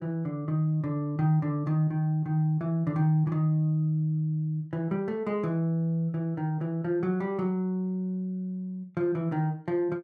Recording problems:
none

